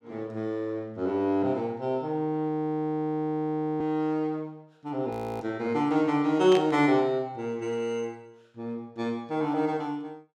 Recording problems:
audio freezing; at 2.5 s for 1.5 s and at 5 s
burst of static; at 6.5 s; peak -3 dB vs average level

